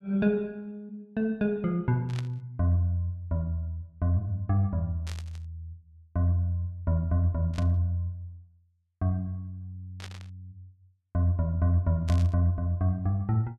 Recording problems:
static burst; 5 times, first at 2 s; peak -9 dB vs average level

